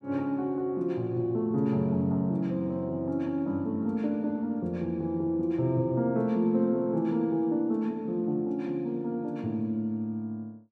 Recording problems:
none

